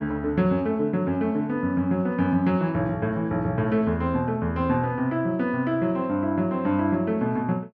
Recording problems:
none

